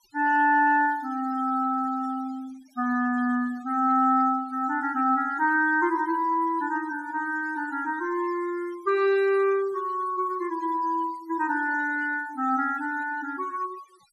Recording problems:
denoising artefacts; signal-to-artefact ratio 23 dB

